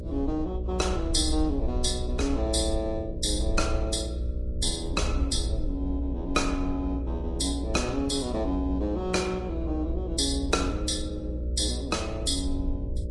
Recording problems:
lossy compression; Vorbis, then Vorbis, log-spectral distance 3 dB
electrical hum; 60 Hz, harmonics up to 600 Hz, SNR 10 dB
low-frequency rumble; below 64 Hz, SNR 4 dB

